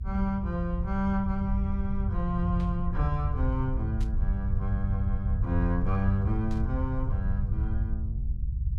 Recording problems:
low-frequency rumble; below 88 Hz, SNR -1 dB
burst of static; at 2.5 s, at 4 s and at 6.5 s; peak -14 dB vs average level

